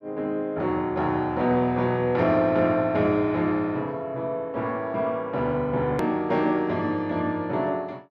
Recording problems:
hard cut with a click; at 6 s

